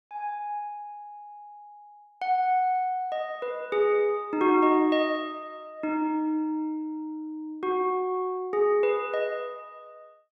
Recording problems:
none

